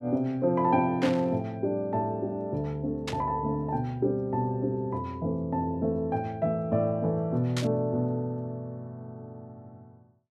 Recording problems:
burst of static; at 1 s, at 3 s and at 7.5 s; peak -1 dB vs average level

